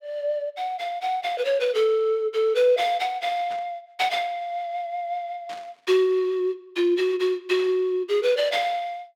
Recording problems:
burst of static; at 3.5 s, at 5.5 s and at 7.5 s; peak -13 dB vs average level

